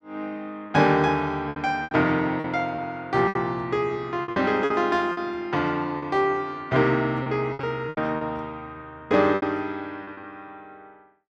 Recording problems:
packet loss; 9% of the sound replaced, filled with repeated pitch periods

